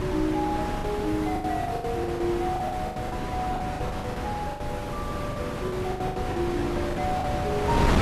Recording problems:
lossy compression; AAC, log-spectral distance 3 dB
background hiss; slope -3 dB per octave, SNR 22 dB
wind noise; below 850 Hz, SNR 1 dB
lost packets; 15% of the sound replaced, filled with the last packet

